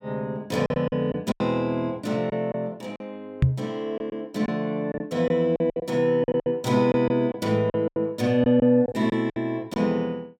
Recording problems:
packet loss; 10% of the sound replaced, filled with silence
microphone bump; at 3.5 s; peak +8 dB vs average level

